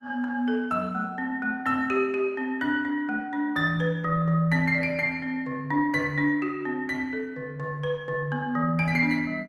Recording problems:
lossy codec; Opus, log-spectral distance 2 dB, nothing above 15.6 kHz

